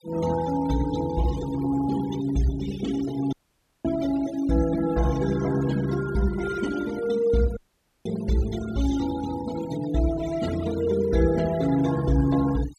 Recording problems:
noise reduction artefacts; signal-to-artefact ratio 14 dB
audio cutting out; at 3.5 s for 0.5 s and at 7.5 s

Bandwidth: 14 kHz